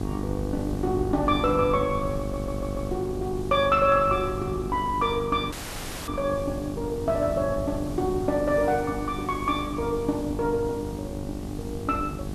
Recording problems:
hum; 50 Hz, harmonics up to 1.2 kHz, SNR 8 dB
hiss; slope -1 dB per octave, SNR 22 dB
wind on the microphone; below 160 Hz, SNR 11 dB
stutter; at 2 s
audio cutting out; at 5.5 s for 0.5 s

